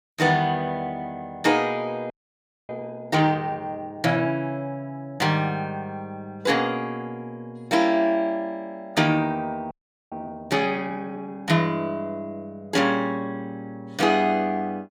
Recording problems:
audio freezing; at 2 s for 0.5 s and at 9.5 s

